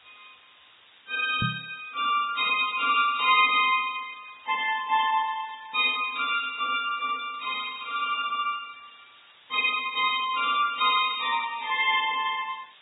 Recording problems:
treble missing; nothing above 3.2 kHz
lossy compression; Vorbis, log-spectral distance 13 dB
background hiss; SNR 27 dB
knock on the microphone; at 1.5 s; peak -2 dB vs average level

